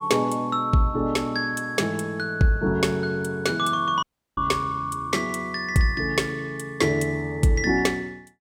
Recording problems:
dropout; at 4 s

